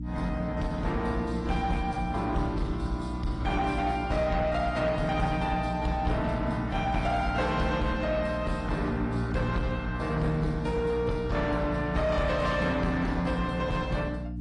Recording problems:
lossy compression; AAC, then AAC, log-spectral distance 3 dB, nothing above 10.4 kHz
distortion; soft clipping, signal-to-distortion ratio 11 dB
mains hum; 60 Hz, harmonics up to 300 Hz, SNR 7 dB

